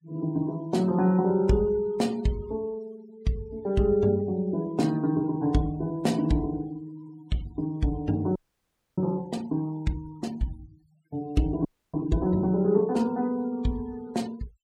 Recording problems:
denoising artefacts; signal-to-artefact ratio 25 dB
frozen audio; at 8.5 s for 0.5 s and at 12 s

